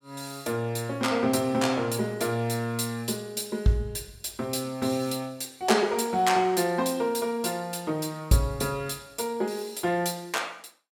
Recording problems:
none

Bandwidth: 17.5 kHz